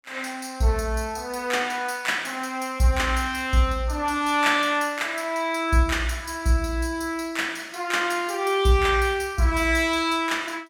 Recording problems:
none

